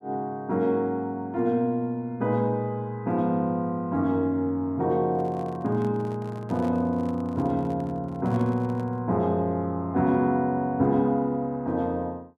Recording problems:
microphone handling noise; from 5 to 9 s; peak -12 dB vs average level

